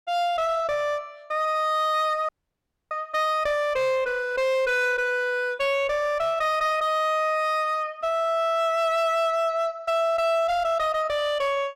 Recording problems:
distortion; hard clipping, uneven, signal-to-distortion ratio 10 dB
dropout; at 2.5 s for 0.5 s

